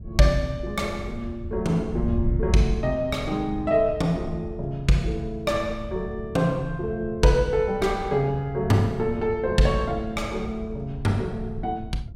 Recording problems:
wind noise; below 100 Hz, SNR 11 dB

